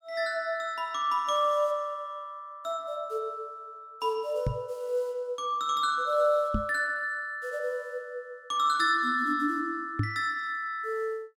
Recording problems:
microphone thump; at 4.5 s, at 6.5 s and at 10 s; peak +4 dB vs average level

